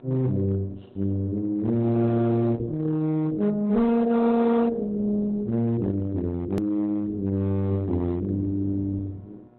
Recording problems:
lossy compression; Opus, log-spectral distance 2 dB, nothing above 13.1 kHz
distortion; hard clipping, uneven, signal-to-distortion ratio 12 dB
mains hum; 60 Hz, harmonics up to 1.4 kHz, SNR 29 dB
click at an edit; at 6.5 s

